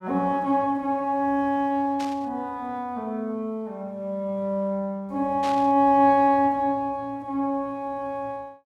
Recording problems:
static burst; at 2 s and at 5.5 s; peak -8 dB vs average level

